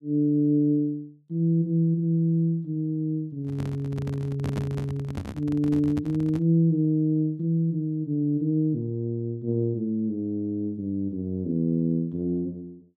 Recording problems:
microphone handling noise; from 3.5 to 6.5 s; peak -2 dB vs average level

